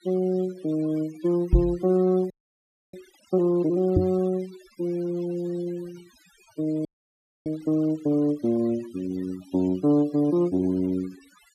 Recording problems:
noise reduction artefacts; signal-to-artefact ratio 24 dB
knock on the microphone; at 1.5 s and at 4 s; peak +9 dB vs average level
audio freezing; at 2.5 s for 0.5 s and at 7 s for 0.5 s

